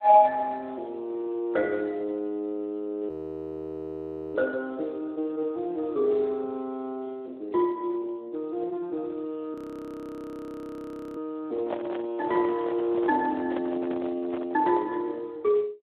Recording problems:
phone line; 280 Hz to 2.3 kHz, Speex
audio freezing; at 3 s for 1.5 s and at 9.5 s for 1.5 s
microphone handling noise; from 11 to 15 s; peak 0 dB vs average level

